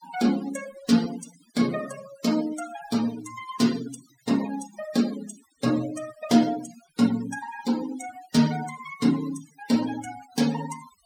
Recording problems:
denoising artefacts; signal-to-artefact ratio 14 dB

